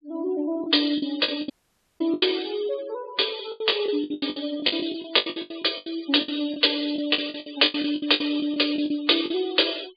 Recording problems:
low-pass filter; nothing above 4.6 kHz
denoising artefacts; signal-to-artefact ratio 19 dB
lost packets; 19% of the sound replaced, filled with the last packet
dropout; at 1.5 s for 0.5 s

